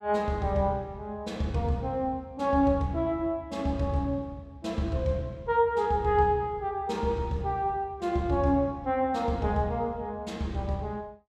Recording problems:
none

